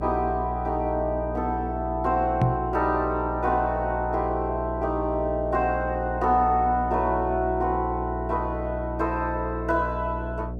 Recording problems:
mains hum; 60 Hz, harmonics up to 720 Hz, SNR 8 dB
microphone thump; at 2.5 s; peak +6 dB vs average level

